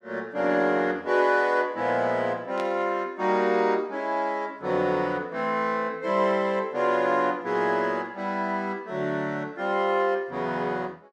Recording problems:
static burst; at 2.5 s; peak -8 dB vs average level

